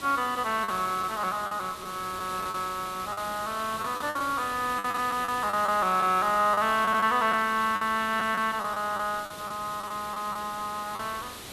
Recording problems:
hiss; slope -2 dB per octave, SNR 13 dB
lost packets; 8% of the sound replaced, filled with the last packet

